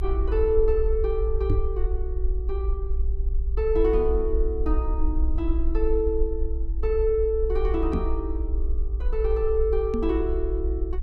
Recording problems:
rumble; below 56 Hz, SNR 1 dB
microphone bump; at 1.5 s, at 8 s and at 10 s; peak +5 dB vs average level

